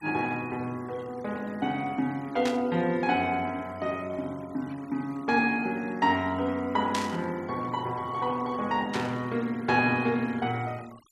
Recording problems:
noise reduction artefacts; signal-to-artefact ratio 23 dB
burst of static; at 2.5 s, at 7 s and at 9 s; peak 0 dB vs average level

